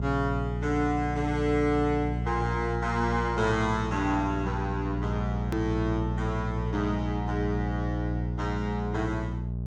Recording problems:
hum; 60 Hz, harmonics up to 600 Hz, SNR 2 dB
edit click; at 5.5 s

